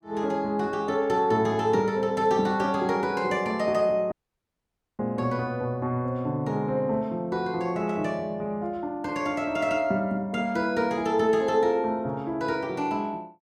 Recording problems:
dropout; at 4 s for 1 s

